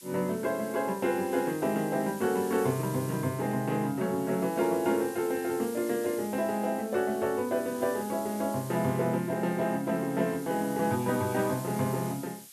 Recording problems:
hiss; SNR 16 dB

